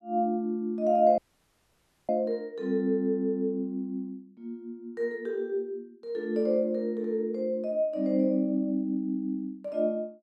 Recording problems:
audio cutting out; at 1 s for 1 s

